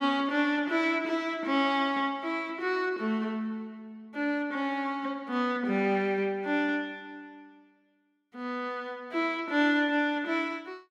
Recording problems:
none

